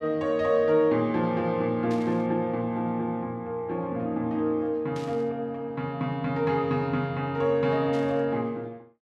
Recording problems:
static burst; at 2 s, at 5 s and at 8 s; peak -14 dB vs average level

